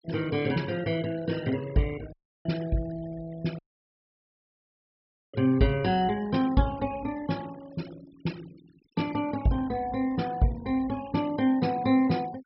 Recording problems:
treble cut off; nothing above 5.4 kHz
denoising artefacts; signal-to-artefact ratio 20 dB
dropout; at 2 s and at 3.5 s for 1.5 s

